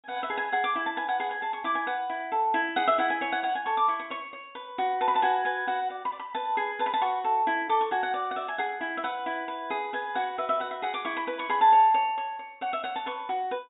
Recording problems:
low-pass filter; nothing above 4 kHz

